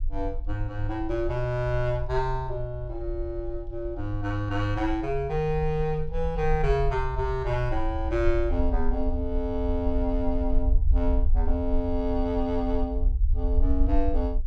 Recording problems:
rumble; below 56 Hz, strongest tone 20 Hz, SNR 2 dB

